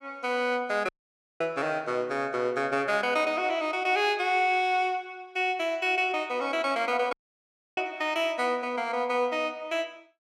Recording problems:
audio cutting out; at 1 s for 0.5 s and at 7 s for 0.5 s

